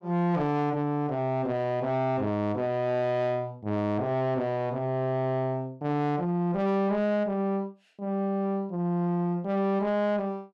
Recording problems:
distorted audio; soft clipping, signal-to-distortion ratio 11 dB

